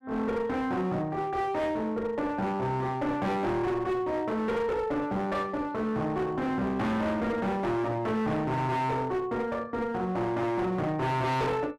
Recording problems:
distortion; hard clipping, uneven, signal-to-distortion ratio 7 dB

